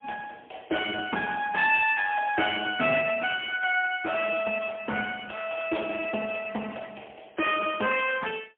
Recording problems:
telephone audio; 240 Hz to 3.3 kHz, AMR-NB, then MP3

